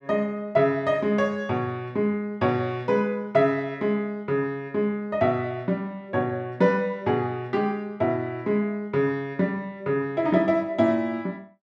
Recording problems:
none

